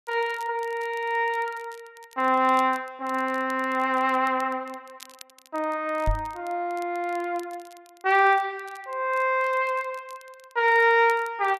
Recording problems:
crackling; vinyl, SNR 27 dB
knock on the microphone; at 6 s; peak +1 dB vs average level

